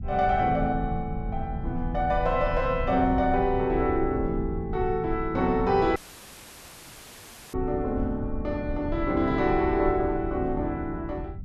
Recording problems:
low-frequency rumble; below 110 Hz, SNR 9 dB
audio cutting out; at 6 s for 1.5 s; filled with static

